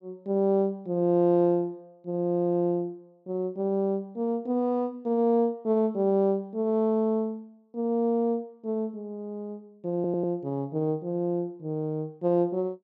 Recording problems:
stutter; at 10 s

